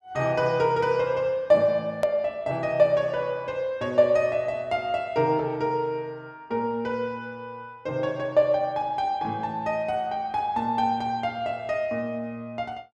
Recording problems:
hard cut with a click; at 2 s

